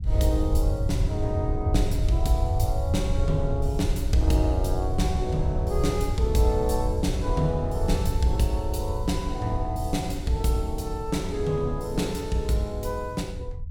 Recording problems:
rumble; below 90 Hz, SNR 2 dB

